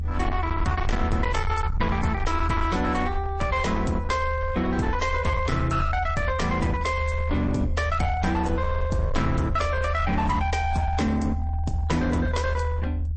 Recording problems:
codec artefacts; MP3, log-spectral distance 2 dB, nothing above 8.2 kHz
distortion; hard clipping, signal-to-distortion ratio 10 dB
low-frequency rumble; below 80 Hz, strongest tone 78 Hz, SNR 3 dB

